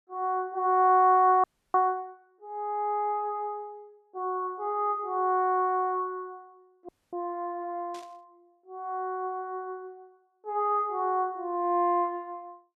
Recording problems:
audio freezing; at 1.5 s and at 7 s
burst of static; at 8 s; peak -16 dB vs average level

